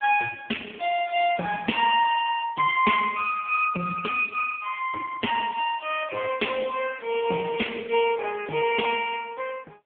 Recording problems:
telephone audio; 280 Hz to 3.4 kHz, AMR-NB

